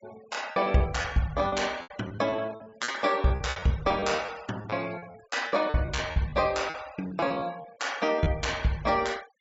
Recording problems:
low-pass filter; nothing above 8 kHz
denoising artefacts; signal-to-artefact ratio 21 dB
lost packets; 14% of the sound replaced, filled with repeated pitch periods

